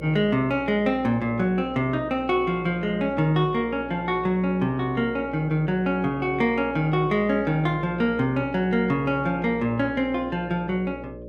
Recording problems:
mains hum; 60 Hz, harmonics up to 600 Hz, SNR 15 dB

